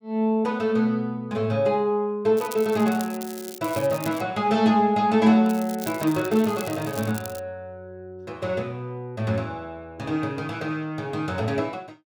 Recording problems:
crackle; from 2.5 to 4 s and from 5.5 to 7.5 s; loose cable, SNR 15 dB

